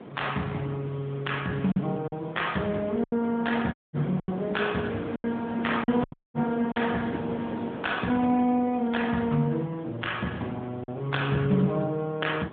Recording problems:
telephone audio; 110 Hz to 3.6 kHz, AMR-NB
background hiss; SNR 24 dB
wind noise; below 630 Hz, SNR 12 dB
packet loss; 5% of the sound replaced, filled with silence
dropout; at 3.5 s and at 6 s

